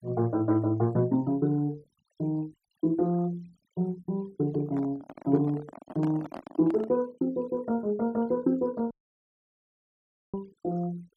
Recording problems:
noise reduction artefacts; signal-to-artefact ratio 25 dB
handling noise; from 4.5 to 7 s; peak -5 dB vs average level
dropout; at 9 s for 1.5 s

